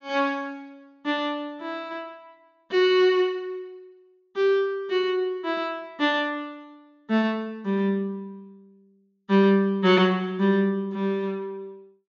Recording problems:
treble missing; nothing above 6.8 kHz

